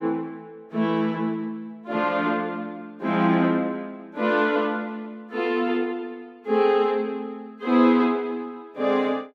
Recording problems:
none

